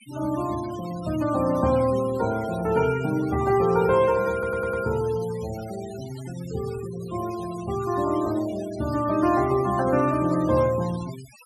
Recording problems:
noise reduction artefacts; signal-to-artefact ratio 18 dB
stutter; at 4.5 s

